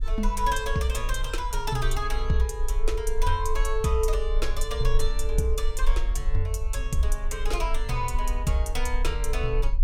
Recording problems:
rumble; below 42 Hz, strongest tone 18 Hz, SNR 2 dB

